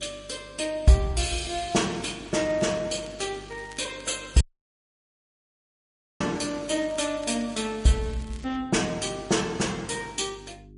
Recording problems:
lossy codec; MP3, log-spectral distance 5 dB, nothing above 10.4 kHz
mains hum; 50 Hz, harmonics up to 400 Hz, SNR 23 dB
crackling; from 1.5 to 4 s and from 6.5 to 8.5 s; loose cable, SNR 23 dB
audio cutting out; at 4.5 s for 2 s

